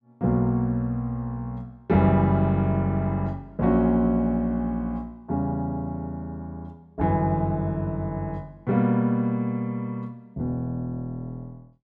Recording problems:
none

